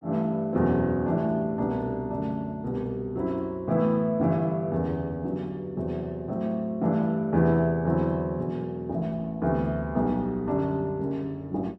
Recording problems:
none

